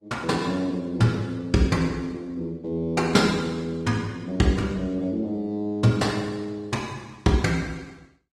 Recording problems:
lossy codec; Opus, log-spectral distance 3 dB, nothing above 16.6 kHz

